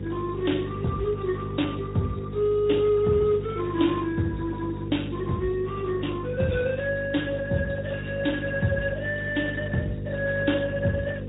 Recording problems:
treble missing; nothing above 3.8 kHz
codec artefacts; Speex, log-spectral distance 5 dB
hum; 50 Hz, harmonics up to 500 Hz, SNR 7 dB

